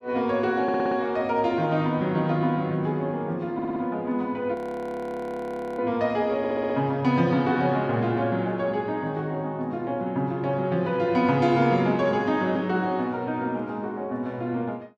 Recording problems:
stutter; at 0.5 s, at 3.5 s and at 6.5 s
frozen audio; at 4.5 s for 1 s

